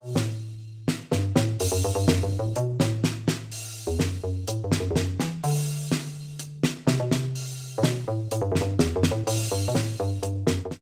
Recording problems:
codec artefacts; Opus, log-spectral distance 4 dB

